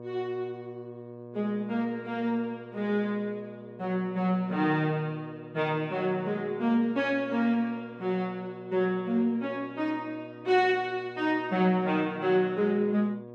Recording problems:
hum; 60 Hz, harmonics up to 1.2 kHz, SNR 17 dB

